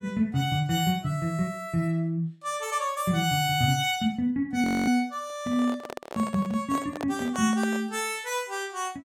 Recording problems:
frozen audio; at 4.5 s
handling noise; from 5.5 to 8 s; peak -4 dB vs average level

